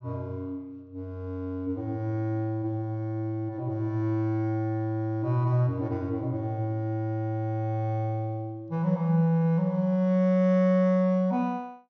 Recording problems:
treble cut off; nothing above 6.3 kHz

